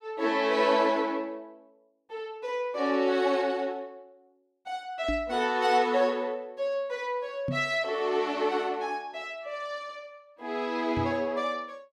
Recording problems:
knock on the microphone; at 5 s, at 7.5 s and at 11 s; peak -1 dB vs average level

